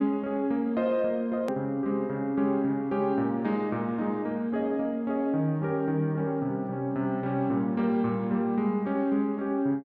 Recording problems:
edit click; at 1.5 s

